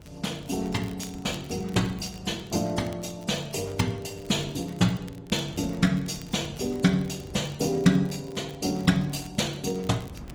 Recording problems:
codec artefacts; Opus, then AAC, log-spectral distance 4 dB, nothing above 15.5 kHz
wind noise; below 250 Hz, SNR 19 dB
crackle; vinyl, SNR 24 dB

